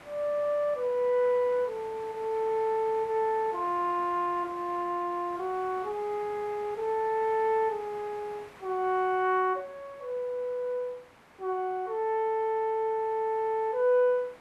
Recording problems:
hiss; SNR 21 dB

